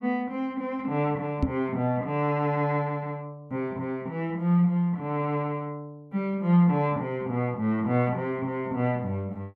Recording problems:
microphone bump; at 1.5 s; peak +5 dB vs average level

